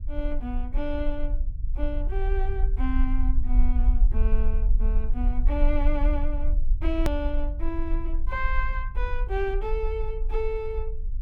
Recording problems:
rumble; below 46 Hz, SNR -5 dB
hard cut with a click; at 7 s

